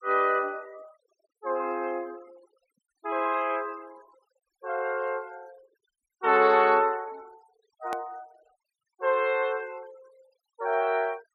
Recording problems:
noise reduction artefacts; signal-to-artefact ratio 27 dB
click at an edit; at 8 s

